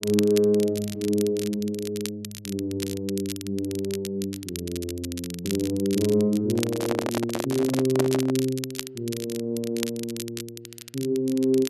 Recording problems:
crackle; vinyl, SNR 11 dB
microphone handling noise; from 6.5 to 8.5 s; peak +3 dB vs average level

